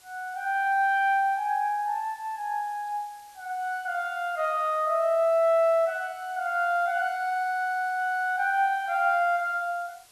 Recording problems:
background hiss; slope +1 dB per octave, SNR 27 dB

